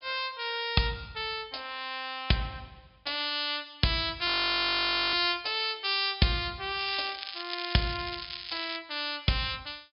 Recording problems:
treble missing; nothing above 5.5 kHz
frozen audio; at 4.5 s for 1 s
crackle; from 7 to 9 s; loose cable, SNR 8 dB

